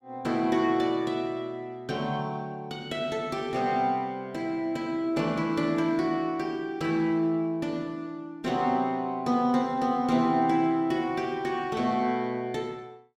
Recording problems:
none

